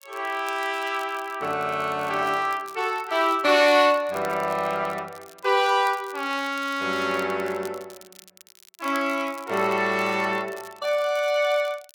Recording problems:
crackling; vinyl, SNR 23 dB

